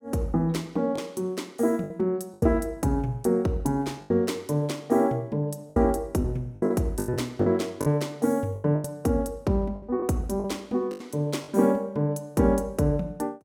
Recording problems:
lost packets; 8% of the sound replaced, filled with the last packet

